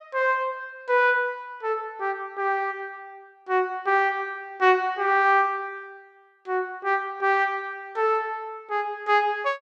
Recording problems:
none

